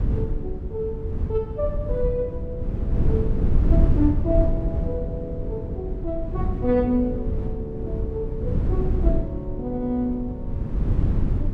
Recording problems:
wind noise; below 120 Hz, SNR -2 dB

